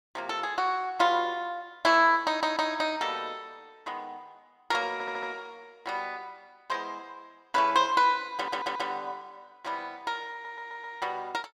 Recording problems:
audio stuttering; 4 times, first at 2.5 s

